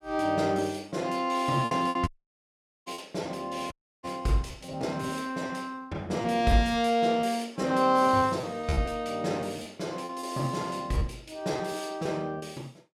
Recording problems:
lost packets; 9% of the sound replaced, filled with repeated pitch periods
dropout; at 2 s for 1 s and at 3.5 s

